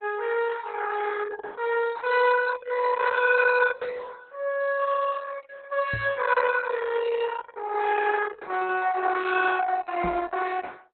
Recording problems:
lossy compression; Opus, log-spectral distance 5 dB, nothing above 4 kHz
microphone thump; at 6 s and at 10 s; peak -3 dB vs average level

